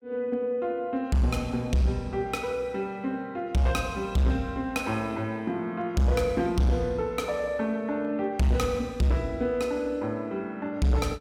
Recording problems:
distorted audio; hard clipping, signal-to-distortion ratio 11 dB

